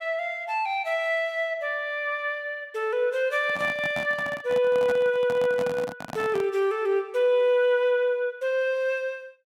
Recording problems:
handling noise; from 3.5 to 6.5 s; peak -6 dB vs average level

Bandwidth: 16 kHz